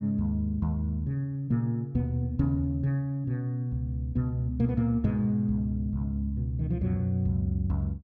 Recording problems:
none

